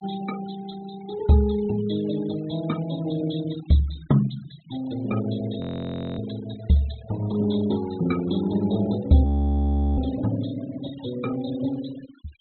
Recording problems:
treble cut off; nothing above 4 kHz
denoising artefacts; signal-to-artefact ratio 18 dB
frozen audio; at 5.5 s for 0.5 s and at 9.5 s for 0.5 s

